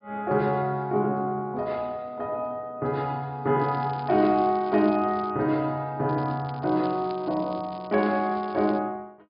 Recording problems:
treble missing; nothing above 5.1 kHz
crackling; from 3.5 to 5.5 s and from 6 to 9 s; loose cable, SNR 26 dB

